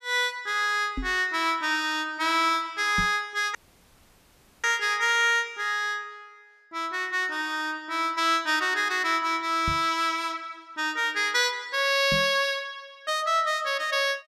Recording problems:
knock on the microphone; 4 times, first at 1 s; peak -3 dB vs average level
dropout; at 3.5 s for 1 s

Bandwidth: 14.5 kHz